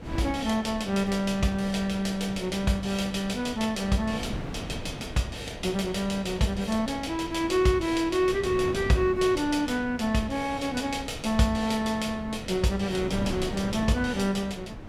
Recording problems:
wind noise; below 340 Hz, SNR 12 dB

